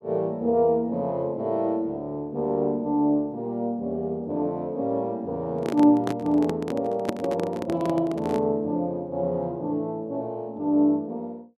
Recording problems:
microphone handling noise; from 5.5 to 8.5 s; peak +2 dB vs average level

